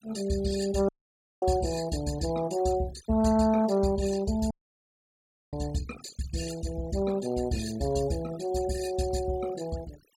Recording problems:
denoising artefacts; signal-to-artefact ratio 16 dB
audio cutting out; at 1 s for 0.5 s and at 4.5 s for 1 s

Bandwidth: 17 kHz